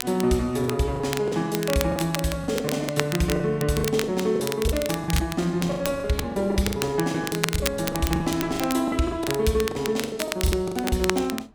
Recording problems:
wind noise; below 580 Hz, SNR 22 dB
crackle; vinyl, SNR 8 dB
packet loss; 14% of the sound replaced, filled with the last packet

